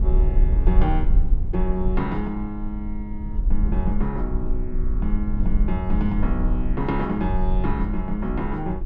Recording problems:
low-frequency rumble; below 50 Hz, SNR -2 dB

